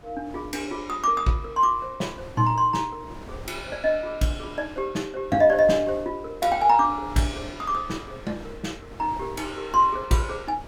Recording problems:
wind noise; below 630 Hz, SNR 19 dB

